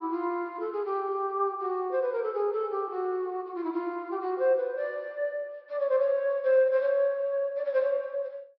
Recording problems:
treble cut off; nothing above 5.5 kHz

